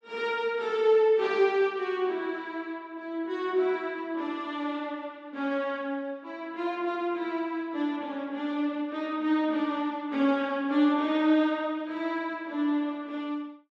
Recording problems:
none

